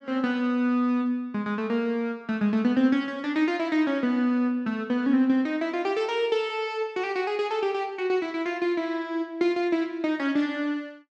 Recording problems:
none

